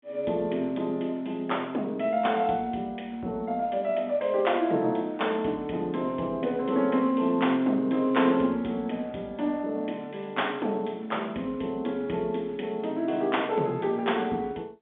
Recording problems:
telephone audio; 150 Hz to 3.6 kHz, G.711

